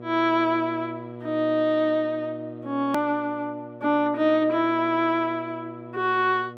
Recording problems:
hum; 60 Hz, harmonics up to 1.3 kHz, SNR 16 dB
edit click; at 3 s

